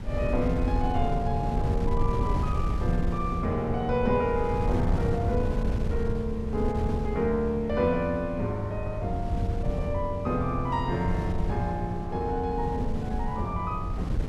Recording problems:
wind on the microphone; below 130 Hz, SNR 3 dB

